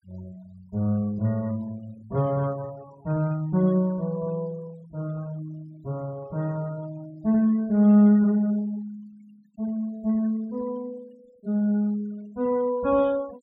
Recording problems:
denoising artefacts; signal-to-artefact ratio 28 dB

